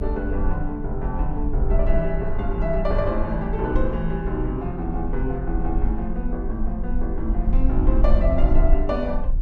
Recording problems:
rumble; below 48 Hz, strongest tone 18 Hz, SNR 0 dB

